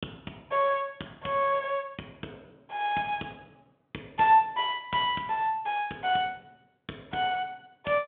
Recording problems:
telephone audio; 150 Hz to 3.5 kHz, G.726

